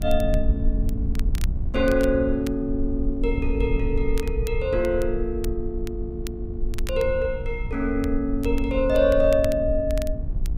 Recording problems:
electrical hum; 60 Hz, harmonics up to 1.1 kHz, SNR 18 dB
rumble; below 62 Hz, SNR 5 dB
crackling; vinyl, SNR 20 dB

